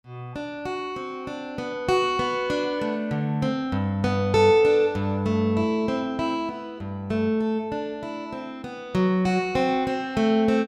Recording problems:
none

